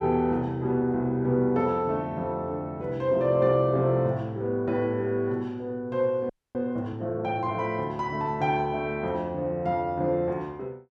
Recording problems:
frozen audio; at 6.5 s

